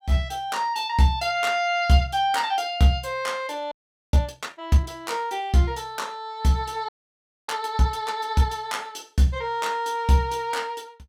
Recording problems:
frozen audio; at 3.5 s and at 7 s for 0.5 s

